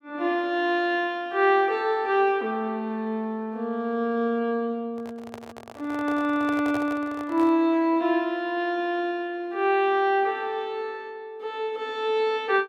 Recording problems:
handling noise; from 5 to 7.5 s; peak -7 dB vs average level

